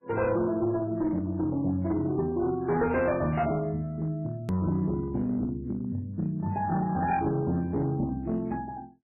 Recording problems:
lossy compression; MP3, log-spectral distance 2 dB, nothing above 2.4 kHz
distortion; hard clipping, uneven, signal-to-distortion ratio 11 dB
click at an edit; at 4.5 s

